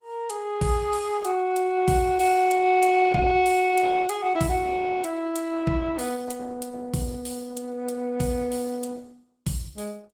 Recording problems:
lossy compression; Opus, log-spectral distance 4 dB, nothing above 19 kHz

